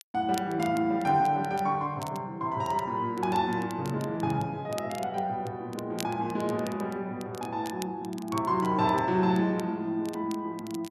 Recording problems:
crackle; vinyl, SNR 19 dB

